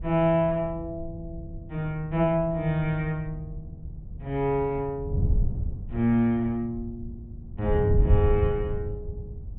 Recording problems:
treble cut off; nothing above 4 kHz
wind noise; below 100 Hz, SNR 5 dB

